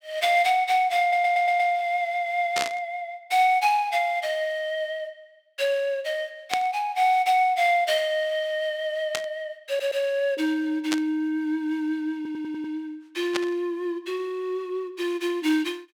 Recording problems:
stutter; at 1 s, at 9.5 s and at 12 s
static burst; 5 times, first at 2.5 s; peak +2 dB vs average level

